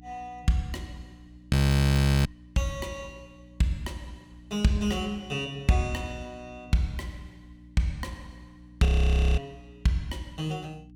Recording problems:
hum; 60 Hz, harmonics up to 300 Hz, SNR 23 dB
frozen audio; at 1.5 s for 0.5 s and at 9 s for 0.5 s

